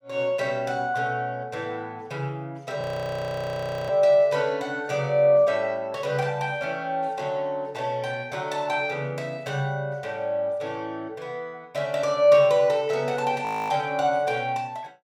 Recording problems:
audio freezing; at 3 s for 1 s and at 13 s

